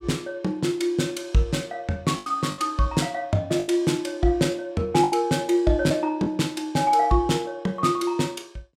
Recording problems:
lost packets; 4% of the sound replaced, filled with the last packet

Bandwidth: 16.5 kHz